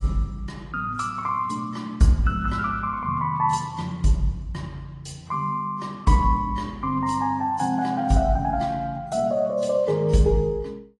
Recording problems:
codec artefacts; MP3, then AAC, log-spectral distance 2 dB

